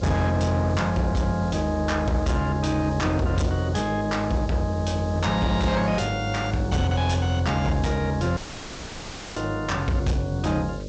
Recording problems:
low-pass filter; nothing above 8 kHz
distortion; soft clipping, signal-to-distortion ratio 11 dB
electrical hum; 50 Hz, harmonics up to 600 Hz, SNR 11 dB
background hiss; slope +7 dB per octave, SNR 23 dB
audio cutting out; at 8.5 s for 1 s

